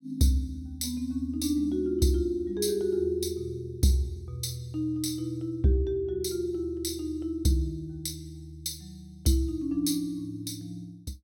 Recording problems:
none

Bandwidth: 16.5 kHz